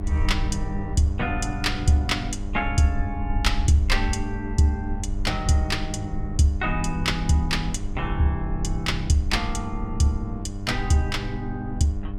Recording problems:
hum; 50 Hz, harmonics up to 1.1 kHz, SNR 10 dB
low-frequency rumble; below 60 Hz, SNR 7 dB
wind on the microphone; below 670 Hz, SNR 24 dB

